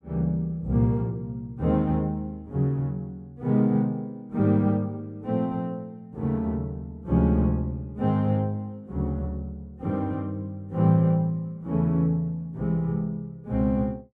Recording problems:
none

